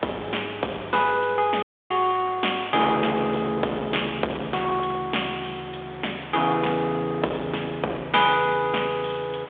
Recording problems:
telephone audio; 320 Hz to 3.6 kHz, G.726
distortion; hard clipping, uneven, signal-to-distortion ratio 12 dB
hiss; SNR 18 dB
audio cutting out; at 1.5 s

